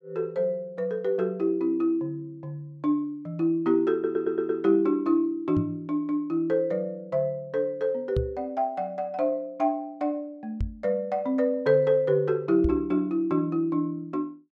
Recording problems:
stutter; at 4 s
microphone thump; 4 times, first at 5.5 s; peak +2 dB vs average level

